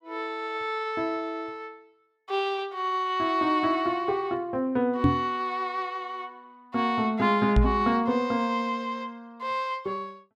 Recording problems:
microphone bump; at 5 s and at 7.5 s; peak +9 dB vs average level

